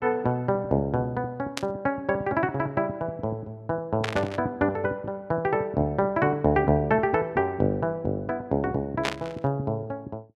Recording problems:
static burst; at 1.5 s, at 4 s and at 9 s; peak +3 dB vs average level

